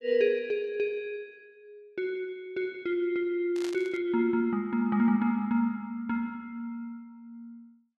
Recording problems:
static burst; at 3.5 s; peak -8 dB vs average level

